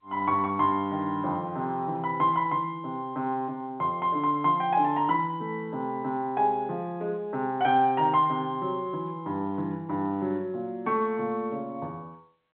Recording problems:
telephone audio; 190 Hz to 3.8 kHz, G.711

